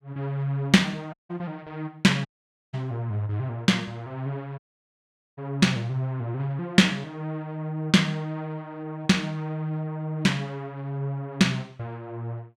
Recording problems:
audio cutting out; at 1 s, at 2.5 s and at 4.5 s for 1 s

